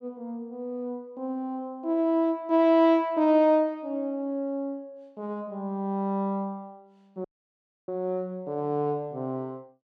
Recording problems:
dropout; at 7.5 s for 0.5 s

